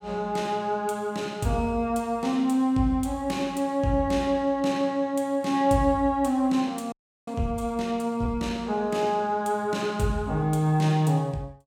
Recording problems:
audio freezing; at 7 s

